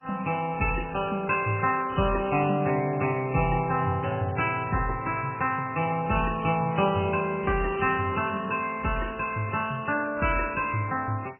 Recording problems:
lossy compression; MP3, then MP2, log-spectral distance 5 dB, nothing above 2.7 kHz

